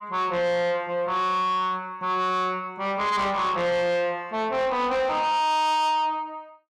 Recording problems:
distortion; soft clipping, signal-to-distortion ratio 7 dB

